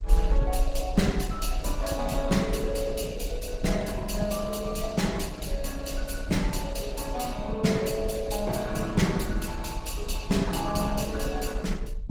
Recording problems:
lossy compression; Opus, then Opus, log-spectral distance 2 dB
low-frequency rumble; below 50 Hz, SNR 5 dB

